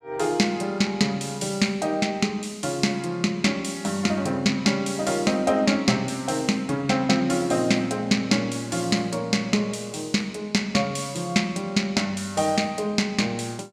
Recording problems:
none

